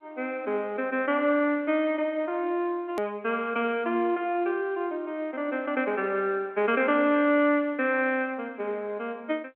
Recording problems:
phone line; 220 Hz to 3.4 kHz, G.711
click at an edit; at 3 s

